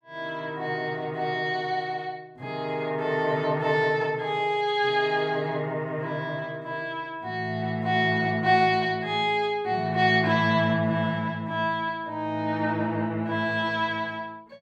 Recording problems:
none

